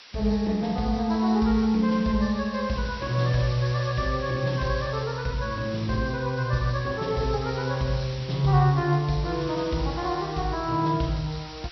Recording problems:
treble missing; nothing above 5.8 kHz
hiss; slope +2 dB per octave, SNR 17 dB

